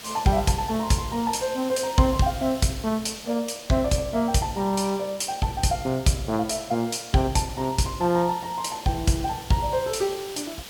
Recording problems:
hiss; SNR 16 dB

